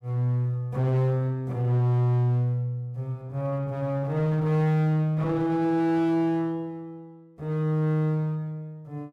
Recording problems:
distortion; hard clipping, uneven, signal-to-distortion ratio 8 dB

